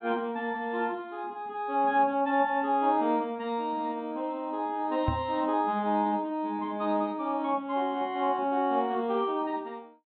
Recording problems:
treble missing; nothing above 4 kHz
knock on the microphone; at 5 s; peak +3 dB vs average level

